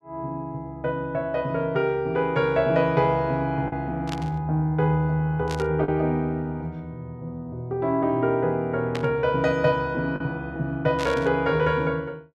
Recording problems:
packet loss; 1% of the sound replaced, filled with the last packet
burst of static; 4 times, first at 4 s; peak -4 dB vs average level

